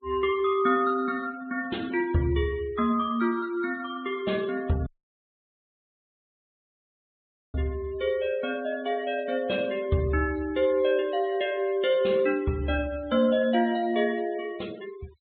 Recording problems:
treble cut off; nothing above 4 kHz
noise reduction artefacts; signal-to-artefact ratio 22 dB
audio cutting out; at 5 s for 2.5 s

